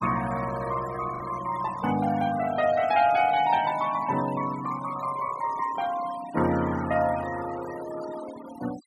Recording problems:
denoising artefacts; signal-to-artefact ratio 14 dB
packet loss; 0.5% of the sound replaced, filled with the last packet

